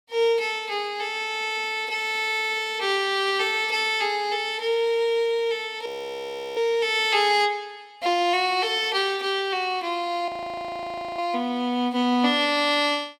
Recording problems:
frozen audio; at 6 s for 0.5 s and at 10 s for 1 s

